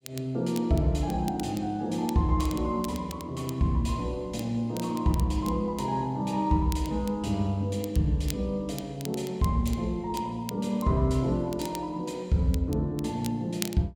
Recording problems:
crackling; vinyl, SNR 17 dB

